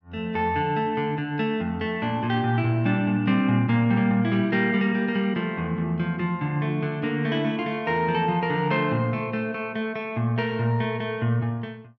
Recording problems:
none

